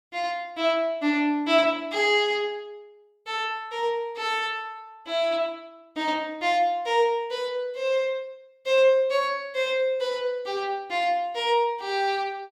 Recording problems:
none

